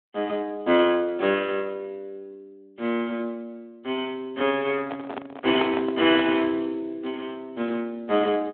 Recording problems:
phone line; 220 Hz to 3.6 kHz, Speex
microphone handling noise; from 4.5 to 6.5 s; peak -1 dB vs average level

